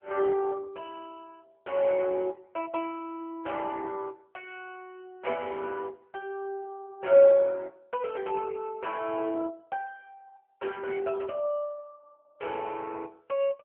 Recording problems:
telephone audio; 260 Hz to 3 kHz, AMR-NB

